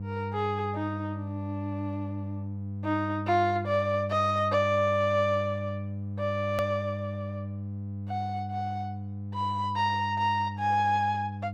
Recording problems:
electrical hum; 50 Hz, harmonics up to 500 Hz, SNR 7 dB
hard cut with a click; at 6.5 s

